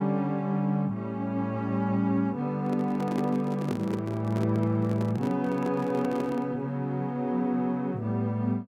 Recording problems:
microphone handling noise; from 2.5 to 6.5 s; peak -2 dB vs average level

